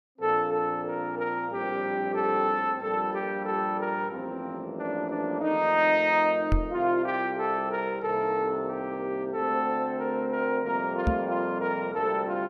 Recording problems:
microphone thump; at 6.5 s and at 11 s; peak +5 dB vs average level

